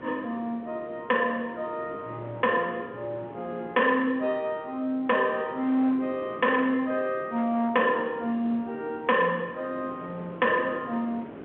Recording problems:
phone line; 190 Hz to 3.5 kHz, G.711
distortion; hard clipping, signal-to-distortion ratio 12 dB
wind noise; below 610 Hz, SNR 17 dB

